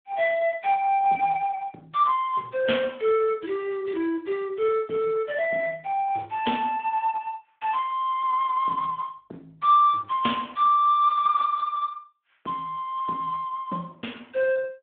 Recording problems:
telephone audio; 260 Hz to 3.5 kHz, Speex

